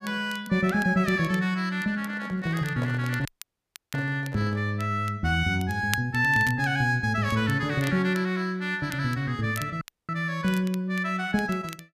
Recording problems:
crackling; vinyl, SNR 19 dB
microphone handling noise; from 2 to 4.5 s; peak -6 dB vs average level
dropout; at 3.5 s for 0.5 s and at 10 s

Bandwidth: 14.5 kHz